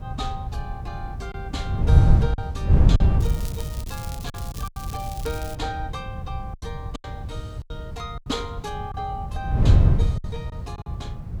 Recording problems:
background hiss; slope -4 dB per octave, SNR 26 dB
wind on the microphone; below 120 Hz, SNR -11 dB
packet loss; 7% of the sound replaced, filled with silence
crackle; from 3 to 5.5 s; loose cable, SNR 6 dB

